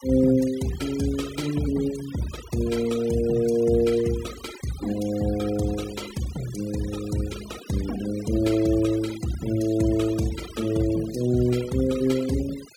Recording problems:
denoising artefacts; signal-to-artefact ratio 16 dB

